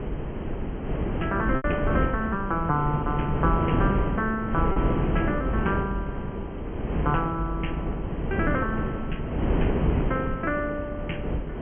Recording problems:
treble missing; nothing above 3.2 kHz
background hiss; SNR 42 dB
wind noise; below 390 Hz, SNR 0 dB
lost packets; 1.1% of the sound replaced, filled with repeated pitch periods

